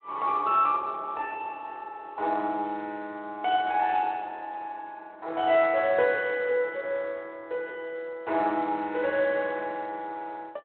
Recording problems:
phone line; 260 Hz to 3.4 kHz, Speex

